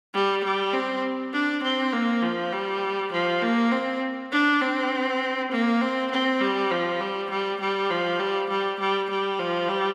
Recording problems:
none

